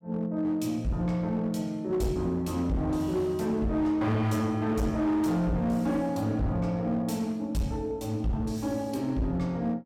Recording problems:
distorted audio; hard clipping, uneven, signal-to-distortion ratio 11 dB

